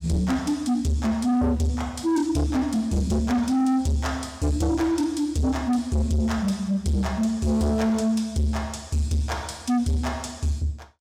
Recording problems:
distorted audio; soft clipping, signal-to-distortion ratio 8 dB

